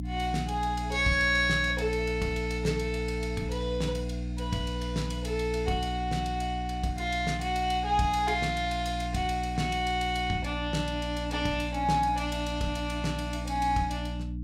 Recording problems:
hum; 60 Hz, harmonics up to 300 Hz, SNR 6 dB

